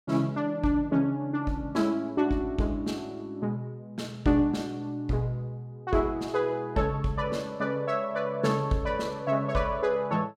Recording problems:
none

